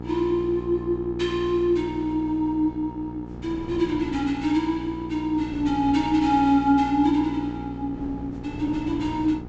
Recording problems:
treble cut off; nothing above 8 kHz
hum; 60 Hz, harmonics up to 1.3 kHz, SNR 12 dB
wind on the microphone; below 320 Hz, SNR 19 dB

